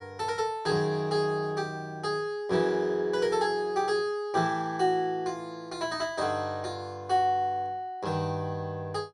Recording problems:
none

